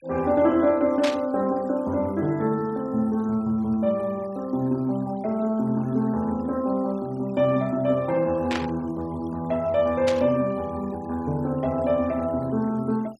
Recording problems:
noise reduction artefacts; signal-to-artefact ratio 27 dB
static burst; at 1 s, at 8.5 s and at 10 s; peak -1 dB vs average level

